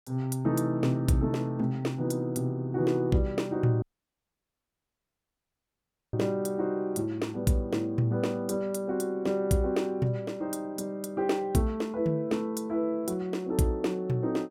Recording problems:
dropout; at 4 s for 2.5 s

